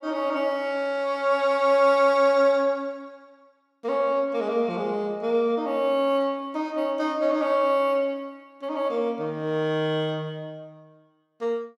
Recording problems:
none

